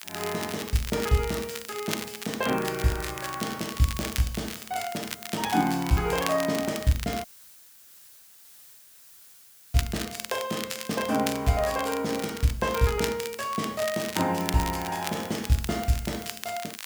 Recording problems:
background hiss; slope +2 dB per octave, SNR 19 dB
crackle; vinyl, SNR 9 dB
audio cutting out; at 7.5 s for 2.5 s

